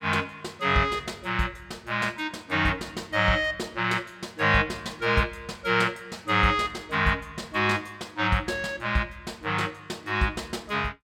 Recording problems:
none

